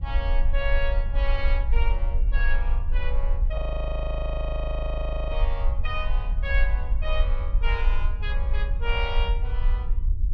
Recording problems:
rumble; below 52 Hz, SNR -6 dB
audio freezing; at 3.5 s for 1.5 s

